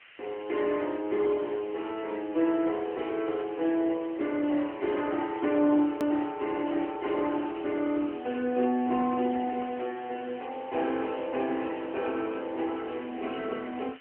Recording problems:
phone line; 220 Hz to 3.1 kHz, AMR-NB
background hiss; SNR 21 dB
hard cut with a click; at 6 s

